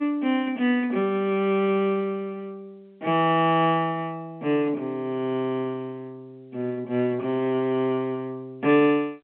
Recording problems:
phone line; 260 Hz to 3.3 kHz, G.711

